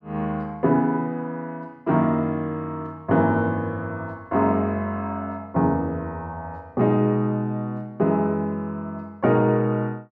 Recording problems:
none

